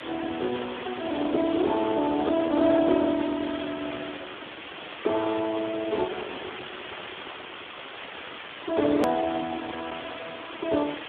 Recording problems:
telephone audio; 260 Hz to 2 kHz, Speex
hiss; SNR 10 dB
click at an edit; at 9 s

